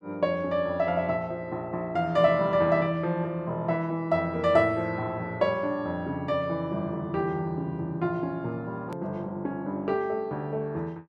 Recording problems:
edit click; at 9 s

